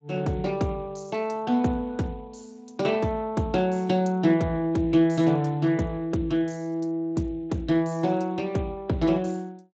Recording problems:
lossy compression; Speex, log-spectral distance 3 dB, nothing above 7.3 kHz

